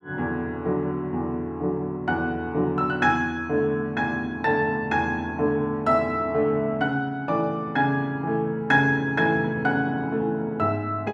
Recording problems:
none

